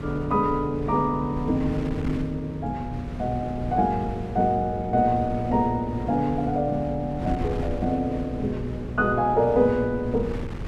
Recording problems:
hum; 60 Hz, harmonics up to 540 Hz, SNR 14 dB
wind noise; below 220 Hz, SNR 11 dB

